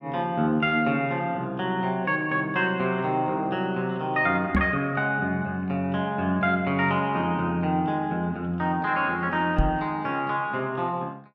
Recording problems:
microphone bump; at 4.5 s and at 9.5 s; peak +6 dB vs average level

